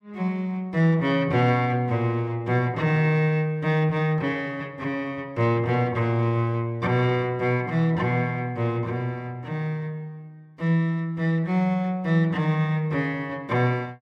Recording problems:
none

